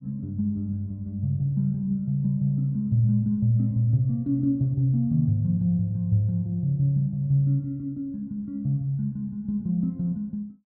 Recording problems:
none

